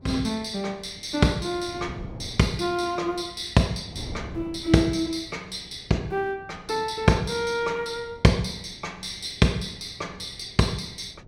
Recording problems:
wind on the microphone; below 290 Hz, SNR 18 dB

